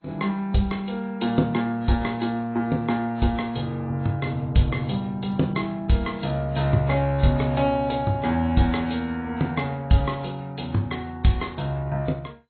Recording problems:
lossy compression; MP2, then AAC, log-spectral distance 3 dB, nothing above 4.2 kHz

